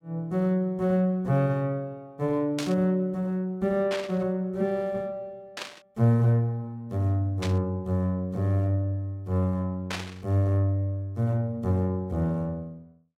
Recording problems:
static burst; 5 times, first at 2.5 s; peak -2 dB vs average level

